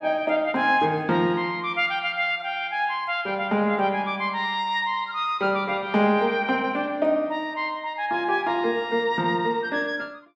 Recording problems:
none

